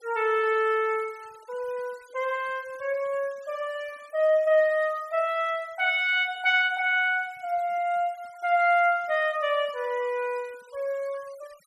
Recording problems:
denoising artefacts; signal-to-artefact ratio 27 dB

